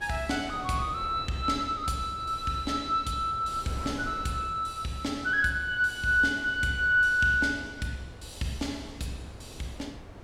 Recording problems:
wind noise; below 540 Hz, SNR 18 dB

